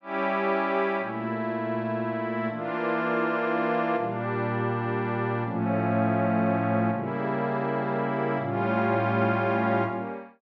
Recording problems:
none

